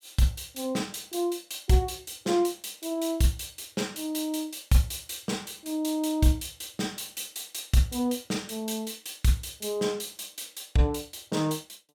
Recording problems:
none

